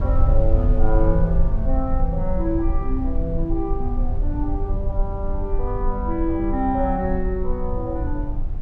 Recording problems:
low-frequency rumble; below 56 Hz, SNR -1 dB

